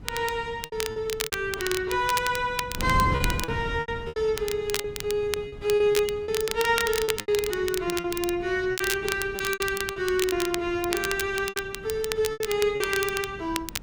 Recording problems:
wind on the microphone; below 200 Hz, SNR 13 dB
crackle; vinyl, SNR 7 dB
lost packets; 11% of the sound replaced, filled with repeated pitch periods

